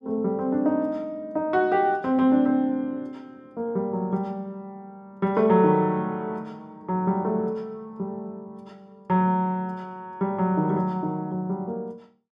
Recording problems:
none

